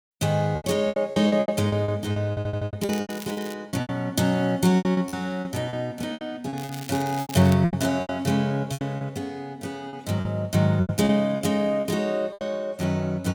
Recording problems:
packet loss; 15% of the sound replaced, filled with repeated pitch periods
audio stuttering; at 2.5 s
crackling; at 3 s and at 6.5 s; loose cable, SNR 16 dB

